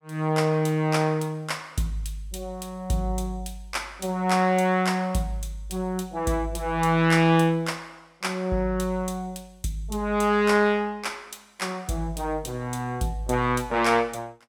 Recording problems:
none

